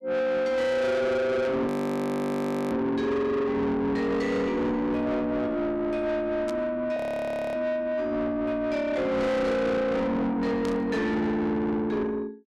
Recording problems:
distortion; soft clipping, signal-to-distortion ratio 8 dB
burst of static; at 1.5 s, at 6.5 s and at 11 s; peak -10 dB vs average level
frozen audio; at 1.5 s for 1 s and at 7 s for 0.5 s

